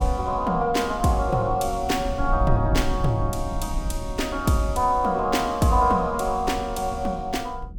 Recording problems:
low-frequency rumble; below 74 Hz, SNR 9 dB

